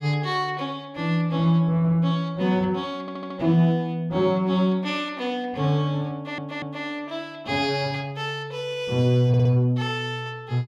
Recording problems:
stutter; at 3 s, at 6 s and at 9.5 s

